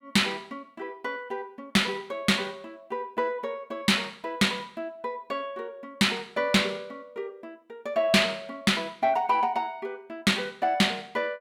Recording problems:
distorted audio; soft clipping, signal-to-distortion ratio 11 dB

